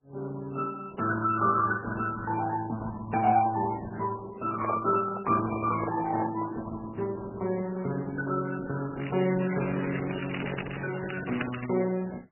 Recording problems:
lossy codec; Opus, then MP3, log-spectral distance 6 dB, nothing above 2.4 kHz
microphone handling noise; from 4.5 to 6.5 s; peak 0 dB vs average level
crackle; from 9 to 12 s; loose cable, SNR 10 dB

